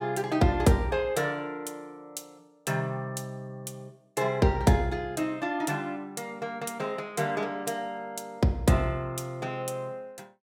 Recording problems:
none

